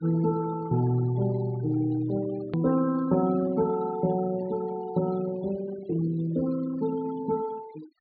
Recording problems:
low-pass filter; nothing above 4.8 kHz
denoising artefacts; signal-to-artefact ratio 19 dB
edit click; at 2.5 s

